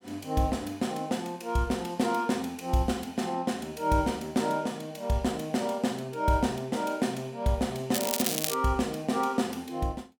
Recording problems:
crackle; at 8 s; loose cable, SNR 1 dB

